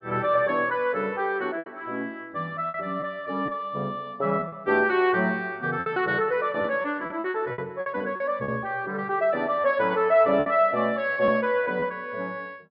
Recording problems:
treble cut off; nothing above 5.1 kHz
packet loss; 7% of the sound replaced, filled with repeated pitch periods

